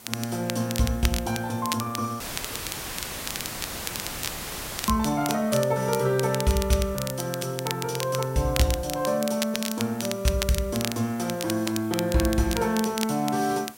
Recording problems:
background hiss; slope -2 dB per octave, SNR 20 dB
crackle; vinyl, SNR 8 dB
audio cutting out; at 2 s for 2.5 s; filled with static

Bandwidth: 16 kHz